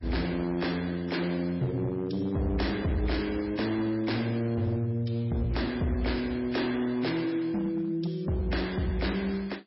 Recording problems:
codec artefacts; MP3, log-spectral distance 4 dB, nothing above 5.5 kHz
distortion; hard clipping, signal-to-distortion ratio 12 dB

